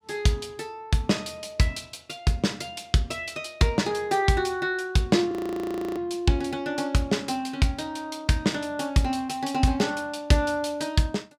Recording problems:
audio freezing; at 5.5 s for 0.5 s

